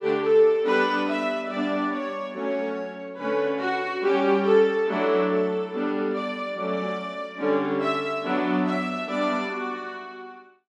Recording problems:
none

